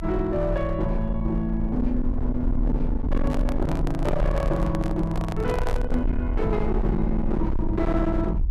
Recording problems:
distorted audio; hard clipping, uneven, signal-to-distortion ratio 8 dB
low-frequency rumble; below 60 Hz, SNR 3 dB
handling noise; from 3 to 6 s; peak -1 dB vs average level

